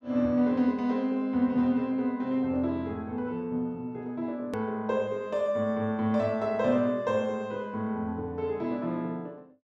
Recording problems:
hard cut with a click; at 4.5 s

